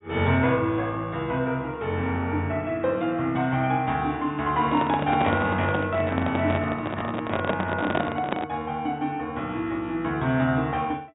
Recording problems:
treble cut off; nothing above 4 kHz
handling noise; from 4.5 to 8.5 s; peak +4 dB vs average level

